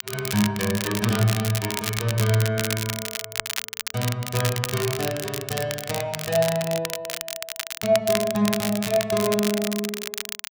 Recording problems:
crackling; vinyl, SNR 5 dB

